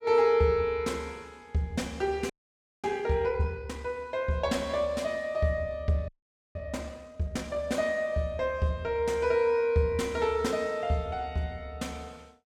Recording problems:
audio freezing; at 2.5 s for 0.5 s and at 6 s

